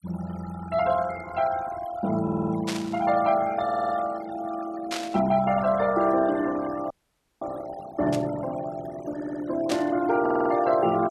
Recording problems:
noise reduction artefacts; signal-to-artefact ratio 15 dB
audio stuttering; 4 times, first at 2 s
burst of static; 4 times, first at 2.5 s; peak -1 dB vs average level
audio freezing; at 7 s for 0.5 s

